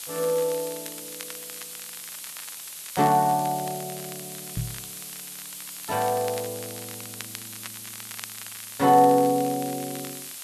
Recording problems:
background hiss; slope +2 dB per octave, SNR 12 dB
crackle; vinyl, SNR 19 dB
microphone thump; at 4.5 s; peak -3 dB vs average level

